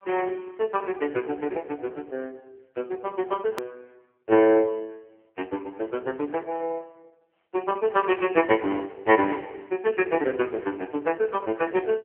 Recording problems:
telephone audio; 260 Hz to 2.9 kHz, AMR-NB
hard cut with a click; at 3.5 s

